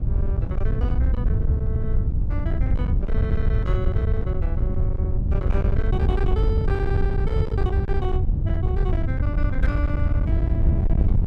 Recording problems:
distortion; hard clipping, uneven, signal-to-distortion ratio 11 dB
wind noise; below 100 Hz, SNR -9 dB

